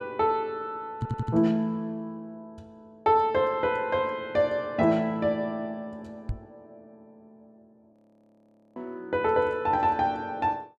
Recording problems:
audio stuttering; at 1 s
microphone thump; at 1 s and at 6.5 s; peak -1 dB vs average level
audio freezing; at 8 s for 1 s

